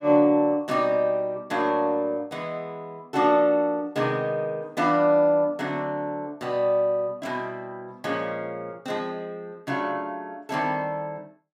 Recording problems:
none

